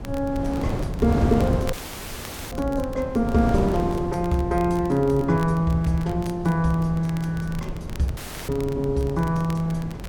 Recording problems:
rumble; below 130 Hz, SNR 14 dB
wind on the microphone; below 380 Hz, SNR 8 dB
crackle; vinyl, SNR 22 dB
audio cutting out; at 1.5 s for 1 s and at 8 s

